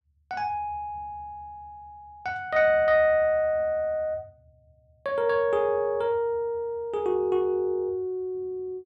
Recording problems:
none

